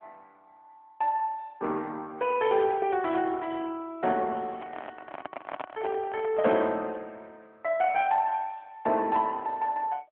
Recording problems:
phone line; 280 Hz to 3.3 kHz, AMR-NB
handling noise; from 4.5 to 6.5 s; peak -3 dB vs average level

